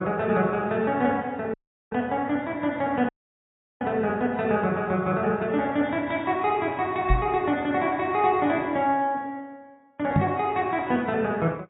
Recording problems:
lossy compression; AAC, log-spectral distance 2 dB, nothing above 3.4 kHz
dropout; at 1.5 s and at 3 s for 0.5 s
microphone thump; at 7 s and at 10 s; peak +7 dB vs average level

